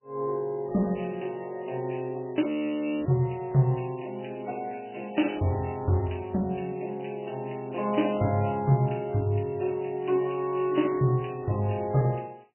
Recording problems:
lossy compression; MP3, log-spectral distance 8 dB, nothing above 3 kHz
audio freezing; at 2.5 s for 0.5 s

